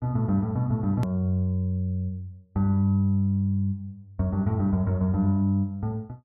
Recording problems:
hard cut with a click; at 1 s

